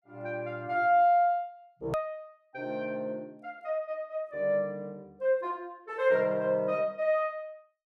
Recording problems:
hard cut with a click; at 2 s

